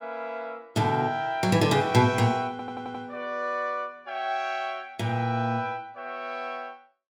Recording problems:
stutter; at 2.5 s

